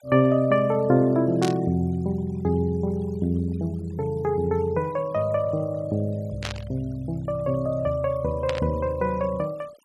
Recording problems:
denoising artefacts; signal-to-artefact ratio 26 dB
burst of static; at 1.5 s, at 6.5 s and at 8.5 s; peak -3 dB vs average level

